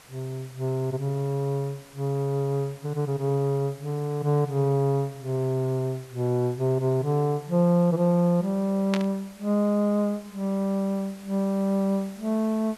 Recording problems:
background hiss; slope -2 dB per octave, SNR 24 dB
burst of static; at 9 s; peak -1 dB vs average level

